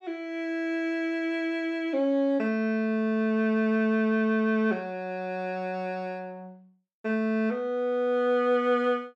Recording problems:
none

